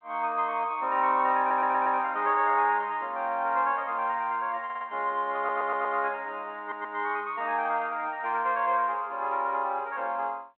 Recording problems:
telephone audio; 220 Hz to 3.3 kHz, G.726
audio stuttering; 4 times, first at 1.5 s

